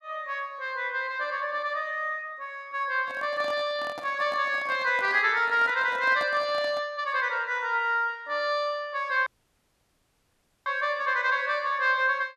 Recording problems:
microphone handling noise; from 3 to 7 s; peak -8 dB vs average level
audio cutting out; at 9.5 s for 1.5 s

